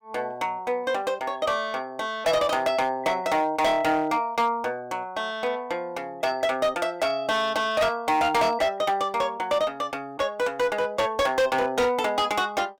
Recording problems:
distortion; hard clipping, signal-to-distortion ratio 11 dB

